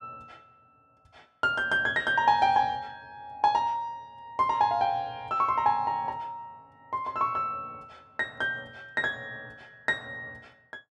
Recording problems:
none

